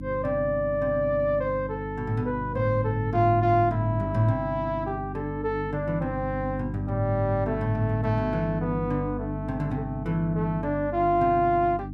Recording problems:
electrical hum; 50 Hz, harmonics up to 300 Hz, SNR 8 dB

